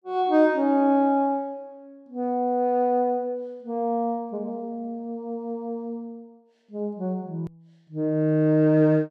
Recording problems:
hard cut with a click; at 7.5 s

